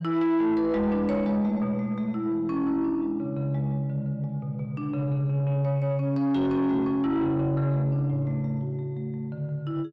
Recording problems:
distorted audio; soft clipping, signal-to-distortion ratio 10 dB

